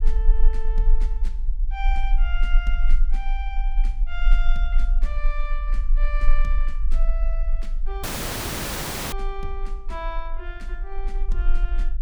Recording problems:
rumble; below 34 Hz, strongest tone 22 Hz, SNR -10 dB
audio cutting out; at 8 s for 1 s

